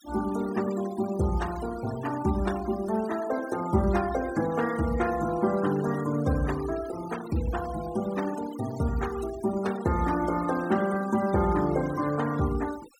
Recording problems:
denoising artefacts; signal-to-artefact ratio 15 dB

